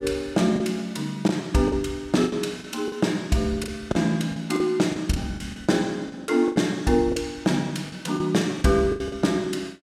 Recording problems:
packet loss; 11% of the sound replaced, filled with the last packet

